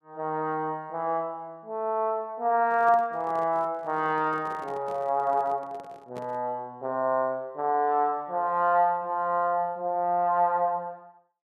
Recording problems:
handling noise; from 2.5 to 6.5 s; peak -11 dB vs average level

